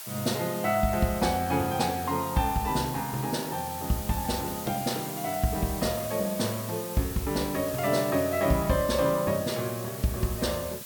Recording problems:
hiss; slope +1 dB per octave, SNR 9 dB

